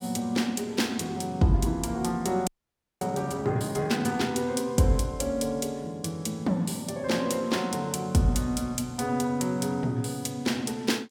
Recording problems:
frozen audio; at 2.5 s for 0.5 s

